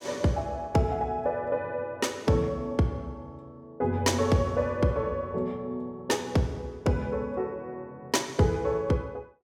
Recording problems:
none

